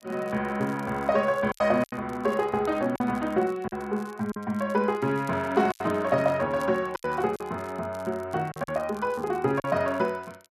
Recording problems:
crackle; vinyl, SNR 27 dB
lost packets; 6% of the sound replaced, filled with silence
microphone handling noise; from 5 to 6.5 s; peak -8 dB vs average level

